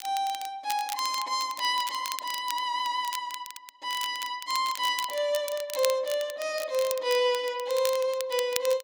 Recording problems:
crackling; vinyl, SNR 10 dB

